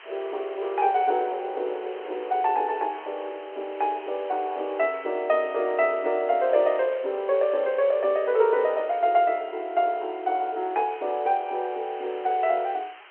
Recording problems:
telephone audio; 320 Hz to 3.3 kHz, G.711
background hiss; SNR 22 dB

